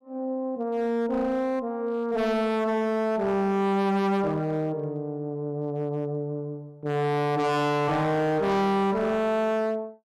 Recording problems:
distorted audio; hard clipping, signal-to-distortion ratio 7 dB

